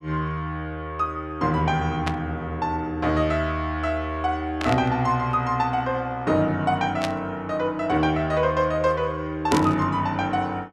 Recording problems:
burst of static; 4 times, first at 2 s; peak -1 dB vs average level

